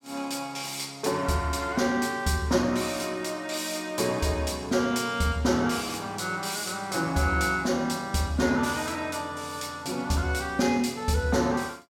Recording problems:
none

